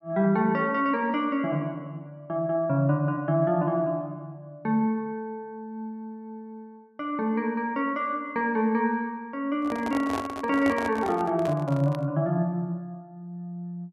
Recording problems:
handling noise; from 9.5 to 12 s; peak -2 dB vs average level

